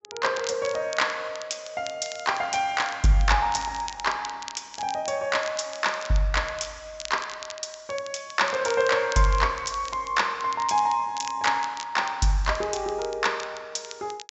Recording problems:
low-pass filter; nothing above 7.5 kHz
crackling; vinyl, SNR 15 dB

